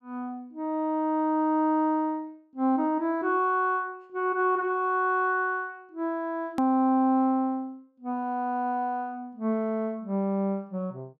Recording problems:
hard cut with a click; at 6.5 s

